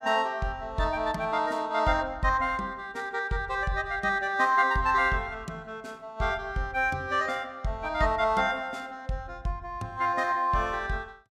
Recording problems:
none

